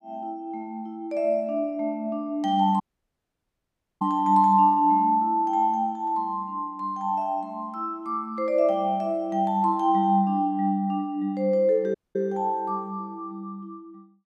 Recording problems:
audio cutting out; at 3 s for 1 s and at 12 s

